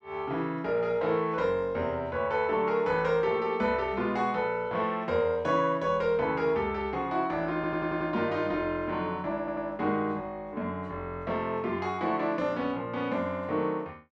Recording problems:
stutter; at 7.5 s and at 9.5 s

